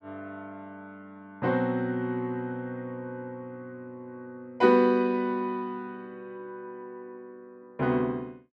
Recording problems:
none

